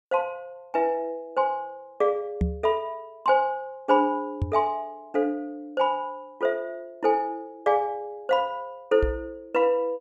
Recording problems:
knock on the microphone; at 2.5 s, at 4.5 s and at 9 s; peak +5 dB vs average level

